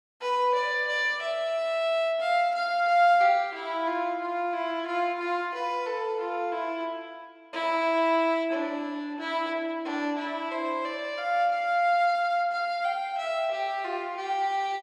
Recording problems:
none

